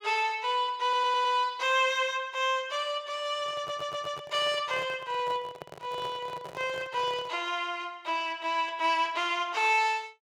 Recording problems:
audio stuttering; at 1 s and at 3.5 s
handling noise; from 3.5 to 7.5 s; peak -9 dB vs average level

